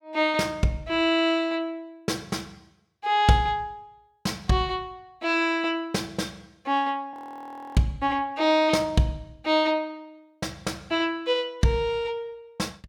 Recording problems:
audio freezing; at 7 s for 0.5 s

